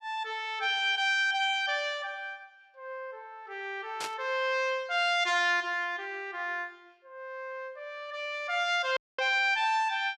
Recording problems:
static burst; at 4 s; peak -4 dB vs average level
audio cutting out; at 9 s

